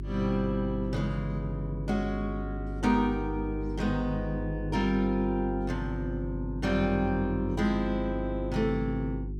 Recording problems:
hum; 50 Hz, harmonics up to 400 Hz, SNR 6 dB

